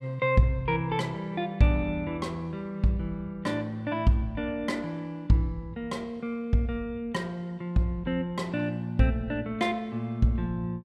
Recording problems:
none

